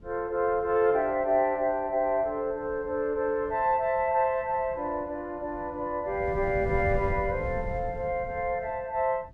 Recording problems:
wind on the microphone; below 150 Hz, SNR 12 dB

